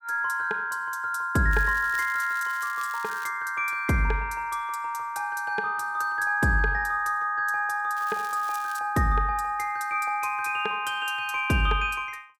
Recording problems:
crackling; from 1.5 to 3.5 s and at 8 s; loose cable, SNR 19 dB

